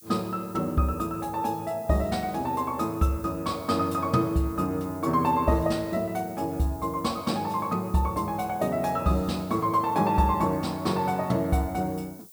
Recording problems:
hiss; SNR 21 dB

